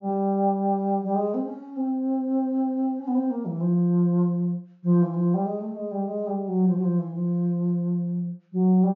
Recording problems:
treble cut off; nothing above 7.1 kHz

